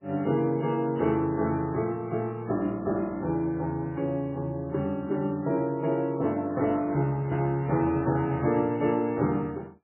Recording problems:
lossy compression; MP3, log-spectral distance 2 dB, nothing above 2.7 kHz

